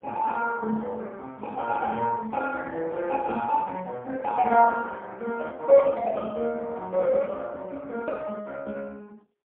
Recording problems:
telephone audio; 280 Hz to 2.2 kHz, AMR-NB, then MP3

